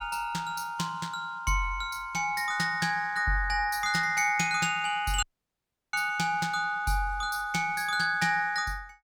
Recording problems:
dropout; at 5 s for 0.5 s

